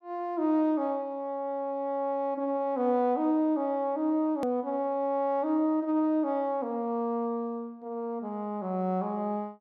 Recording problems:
click at an edit; at 4.5 s

